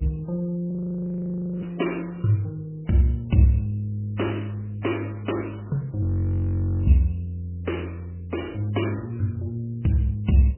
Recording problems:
lossy compression; AAC, then MP3, log-spectral distance 3 dB, nothing above 3 kHz
hum; 50 Hz, harmonics up to 500 Hz, SNR 27 dB
frozen audio; at 0.5 s for 1 s and at 6 s for 1 s

